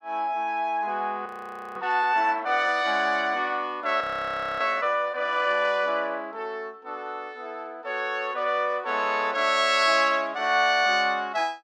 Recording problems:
audio freezing; at 1.5 s for 0.5 s and at 4 s for 0.5 s

